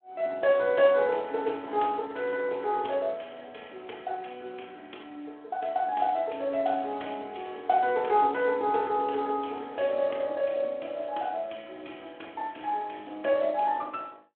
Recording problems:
phone line; 260 Hz to 3.4 kHz, Speex

